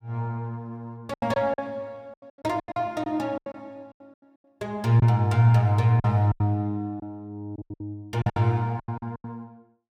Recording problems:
lost packets; 12% of the sound replaced, filled with silence

